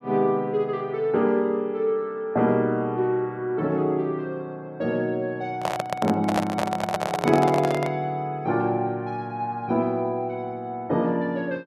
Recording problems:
handling noise; from 5.5 to 8 s; peak +4 dB vs average level

